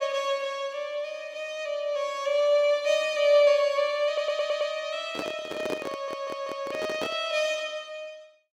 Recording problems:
audio stuttering; at 4 s and at 6 s
microphone handling noise; from 5 to 7 s; peak -1 dB vs average level

